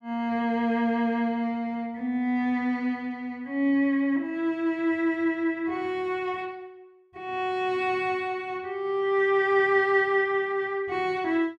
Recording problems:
none

